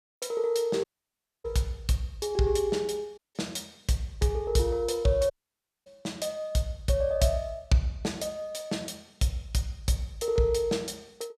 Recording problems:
audio cutting out; at 1 s for 0.5 s, at 3 s and at 5.5 s for 0.5 s

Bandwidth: 14.5 kHz